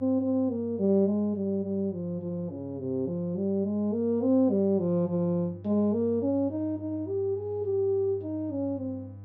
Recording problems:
hum; 50 Hz, harmonics up to 500 Hz, SNR 18 dB

